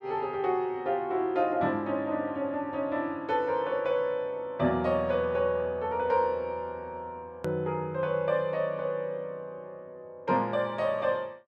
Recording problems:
click at an edit; at 7.5 s

